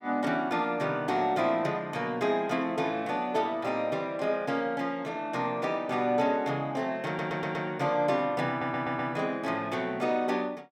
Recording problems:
stutter; at 7 s and at 8.5 s

